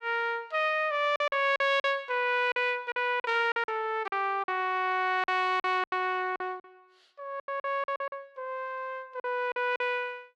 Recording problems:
packet loss; 11% of the sound replaced, filled with silence

